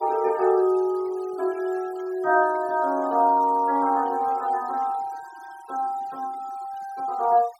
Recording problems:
noise reduction artefacts; signal-to-artefact ratio 24 dB

